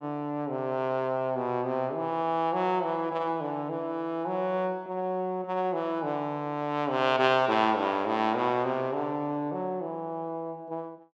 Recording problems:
none

